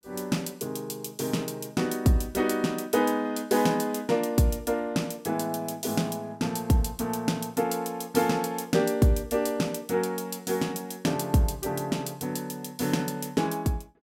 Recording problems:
none

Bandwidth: 16.5 kHz